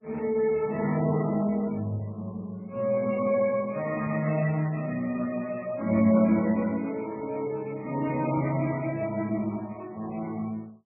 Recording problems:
lossy codec; Speex, then MP3, log-spectral distance 3 dB, nothing above 2.3 kHz

